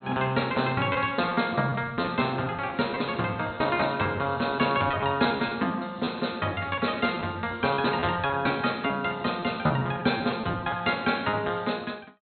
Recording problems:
treble missing; nothing above 4.3 kHz
lost packets; 9% of the sound replaced, filled with repeated pitch periods

